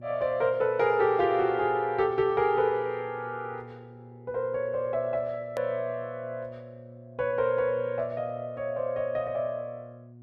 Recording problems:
hum; 60 Hz, harmonics up to 720 Hz, SNR 19 dB
edit click; at 5.5 s

